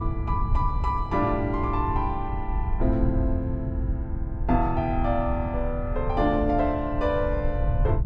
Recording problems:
wind noise; below 88 Hz, SNR 3 dB

